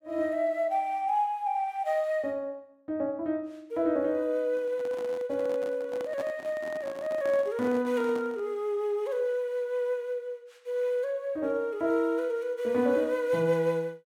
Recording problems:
handling noise; from 4.5 to 8.5 s; peak -9 dB vs average level

